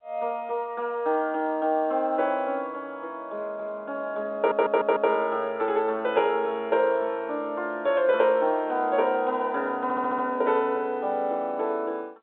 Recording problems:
phone line; 240 Hz to 3.7 kHz, G.711
audio stuttering; at 4.5 s and at 10 s

